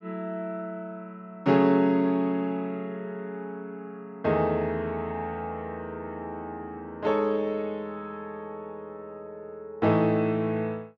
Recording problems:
none

